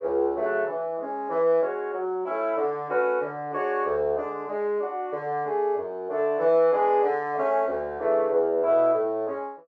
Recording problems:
none

